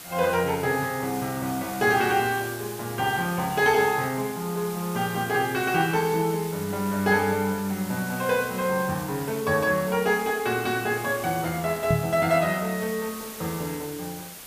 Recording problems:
hiss; slope -1 dB per octave, SNR 13 dB
knock on the microphone; at 12 s; peak +4 dB vs average level

